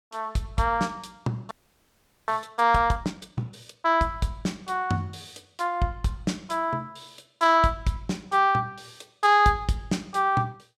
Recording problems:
frozen audio; at 1.5 s for 1 s

